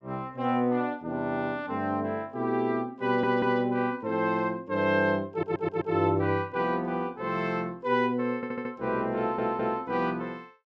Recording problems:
stutter; 4 times, first at 3 s

